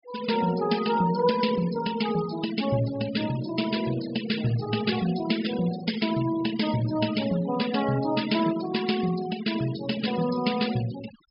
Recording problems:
treble missing; nothing above 5.5 kHz
denoising artefacts; signal-to-artefact ratio 12 dB

